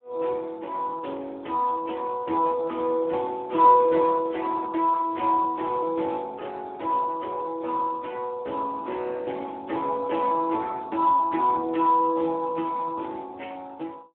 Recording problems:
phone line; 280 Hz to 3.6 kHz, Speex

